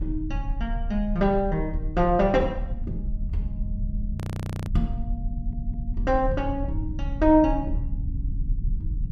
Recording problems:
low-frequency rumble; below 74 Hz, strongest tone 34 Hz, SNR 6 dB
audio freezing; at 4 s for 0.5 s
stutter; at 5.5 s

